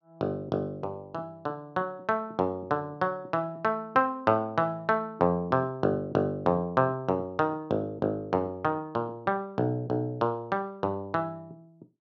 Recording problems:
none

